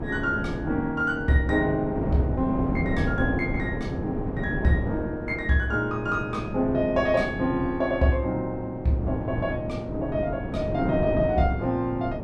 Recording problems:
wind noise; below 370 Hz, SNR 5 dB

